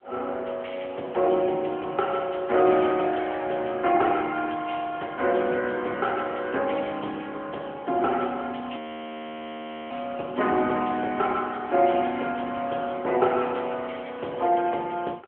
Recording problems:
phone line; 300 Hz to 3.2 kHz, AMR-NB
frozen audio; at 9 s for 1 s

